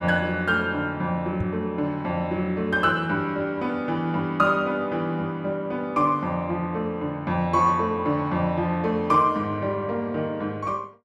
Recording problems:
knock on the microphone; at 1.5 s; peak +1 dB vs average level

